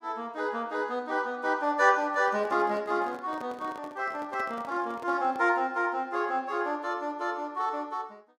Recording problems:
microphone handling noise; from 2 to 5.5 s; peak -10 dB vs average level

